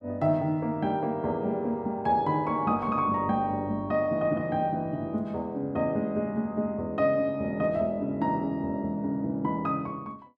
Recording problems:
none

